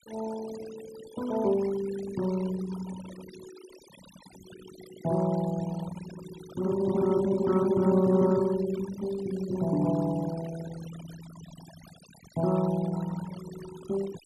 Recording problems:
noise reduction artefacts; signal-to-artefact ratio 16 dB

